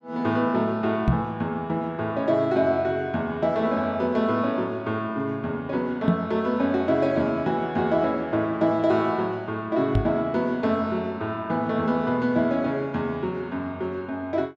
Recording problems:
microphone thump; at 1 s, at 6 s and at 10 s; peak +7 dB vs average level

